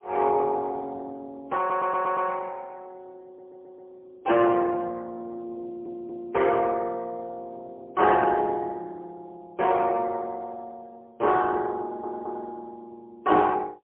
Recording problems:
phone line; 240 Hz to 3.1 kHz, AMR-NB, then MP3
audio stuttering; 4 times, first at 1.5 s

